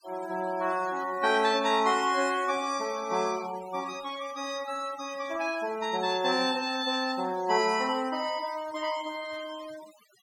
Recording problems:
denoising artefacts; signal-to-artefact ratio 17 dB

